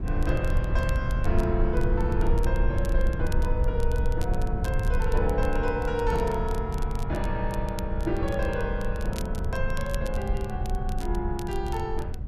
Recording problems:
rumble; below 74 Hz, SNR -1 dB
crackling; vinyl, SNR 18 dB

